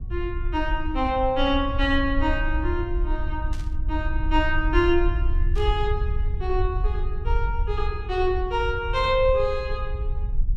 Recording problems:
low-frequency rumble; below 62 Hz, SNR 3 dB
burst of static; at 3.5 s and at 5.5 s; peak -14 dB vs average level

